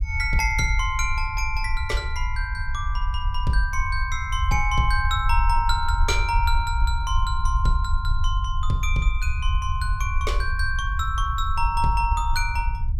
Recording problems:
low-frequency rumble; below 66 Hz, SNR 1 dB

